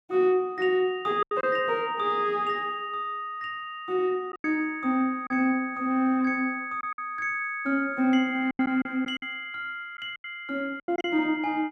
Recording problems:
lost packets; 6% of the sound replaced, filled with silence

